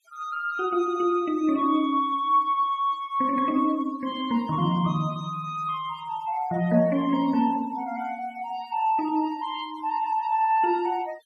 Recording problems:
noise reduction artefacts; signal-to-artefact ratio 24 dB

